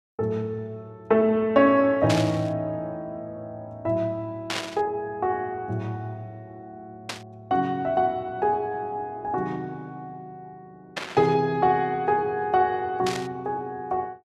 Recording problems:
static burst; 5 times, first at 2 s; peak +1 dB vs average level

